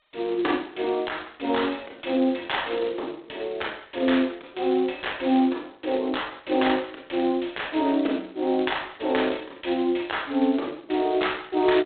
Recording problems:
telephone audio; 260 Hz to 3.9 kHz, G.726

